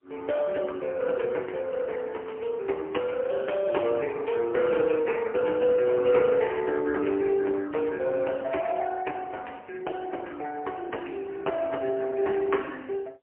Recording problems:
telephone audio; 320 Hz to 3.1 kHz, AMR-NB, then MP3

